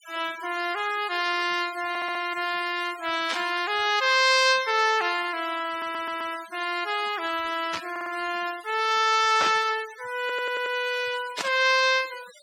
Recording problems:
denoising artefacts; signal-to-artefact ratio 17 dB
stutter; 4 times, first at 2 s
static burst; 4 times, first at 3.5 s; peak -1 dB vs average level

